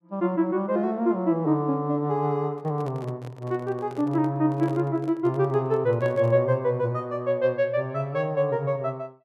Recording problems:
handling noise; from 2.5 to 6.5 s; peak -9 dB vs average level

